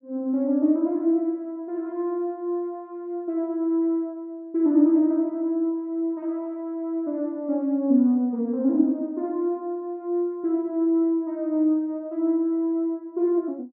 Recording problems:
none

